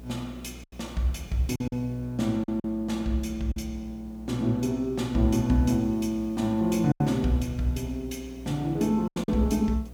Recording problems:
hum; 60 Hz, harmonics up to 660 Hz, SNR 18 dB
hiss; SNR 30 dB
lost packets; 4% of the sound replaced, filled with silence

